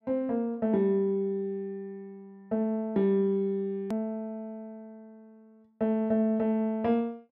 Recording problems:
hard cut with a click; at 4 s

